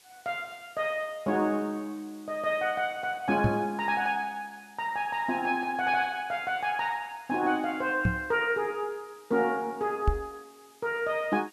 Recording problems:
hiss; slope +1 dB per octave, SNR 27 dB
knock on the microphone; at 3.5 s, at 8 s and at 10 s; peak +7 dB vs average level

